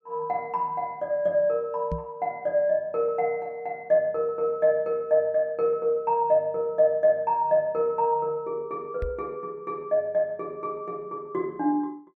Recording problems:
knock on the microphone; at 2 s and at 9 s; peak -2 dB vs average level

